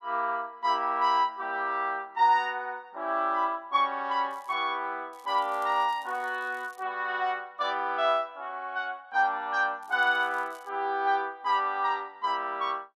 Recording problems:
crackle; at 4.5 s, from 5 to 7 s and at 10 s; loose cable, SNR 30 dB

